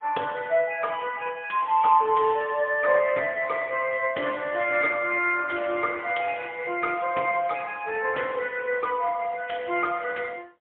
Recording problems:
phone line; 300 Hz to 3.4 kHz, AMR-NB, then MP3

